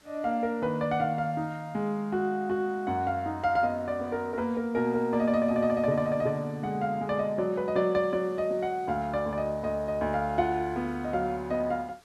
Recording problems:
background hiss; slope -2 dB per octave, SNR 29 dB

